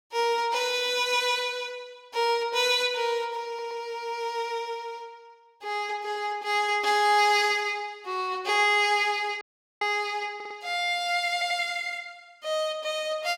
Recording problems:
audio stuttering; at 3.5 s, at 10 s and at 11 s
dropout; at 9.5 s

